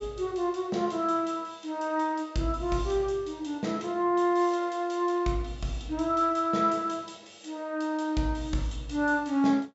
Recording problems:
treble missing; nothing above 7.5 kHz

